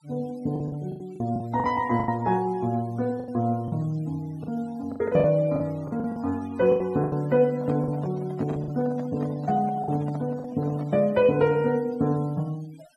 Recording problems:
noise reduction artefacts; signal-to-artefact ratio 24 dB
lost packets; 9% of the sound replaced, filled with the last packet
microphone handling noise; from 7.5 to 11 s; peak -7 dB vs average level

